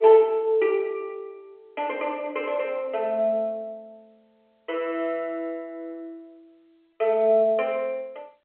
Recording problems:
telephone audio; 300 Hz to 3.2 kHz, G.711

